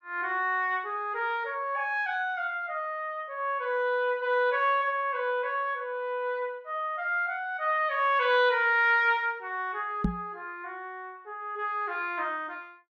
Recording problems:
knock on the microphone; at 10 s; peak +5 dB vs average level

